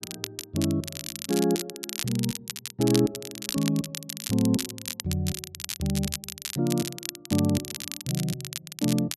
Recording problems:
crackling; vinyl, SNR 6 dB

